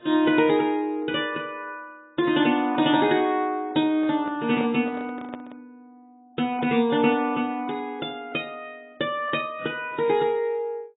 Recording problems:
lossy codec; AAC, log-spectral distance 2 dB, nothing above 3.3 kHz
microphone handling noise; from 4 to 5.5 s; peak -8 dB vs average level

